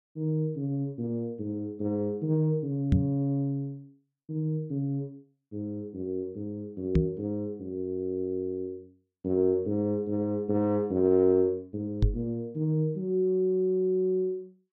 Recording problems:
microphone thump; at 3 s, at 7 s and at 12 s; peak +9 dB vs average level

